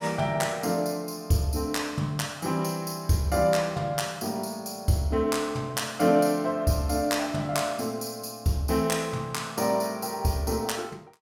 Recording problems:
none

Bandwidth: 17 kHz